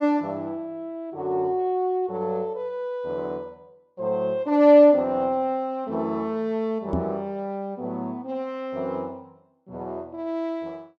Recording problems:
knock on the microphone; at 7 s; peak +2 dB vs average level

